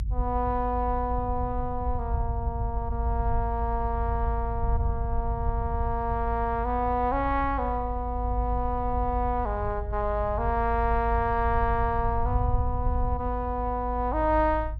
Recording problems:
rumble; below 76 Hz, strongest tone 52 Hz, SNR 3 dB

